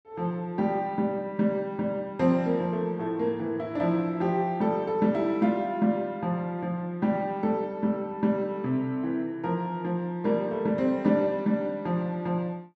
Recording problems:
none

